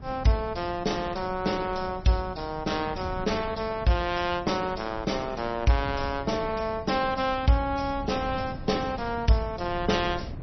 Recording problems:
lossy compression; MP3, log-spectral distance 5 dB, nothing above 5.8 kHz
wind on the microphone; below 170 Hz, SNR 13 dB

